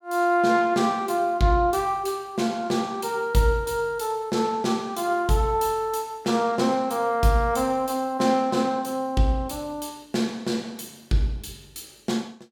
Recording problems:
none

